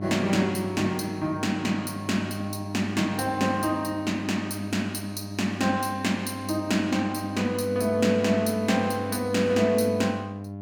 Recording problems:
hum; 50 Hz, harmonics up to 1 kHz, SNR 10 dB

